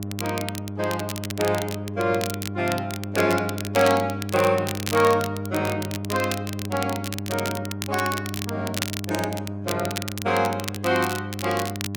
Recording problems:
electrical hum; 50 Hz, harmonics up to 1 kHz, SNR 6 dB
crackle; vinyl, SNR 8 dB

